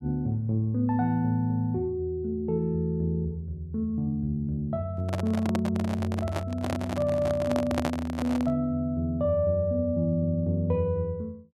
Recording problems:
handling noise; from 5 to 8.5 s; peak +3 dB vs average level

